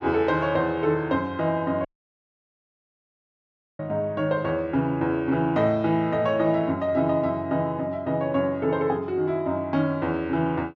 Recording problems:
audio cutting out; at 2 s for 2 s

